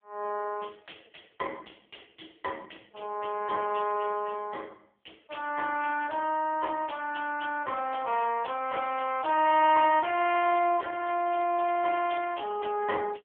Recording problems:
phone line; 280 Hz to 3 kHz, AMR-NB

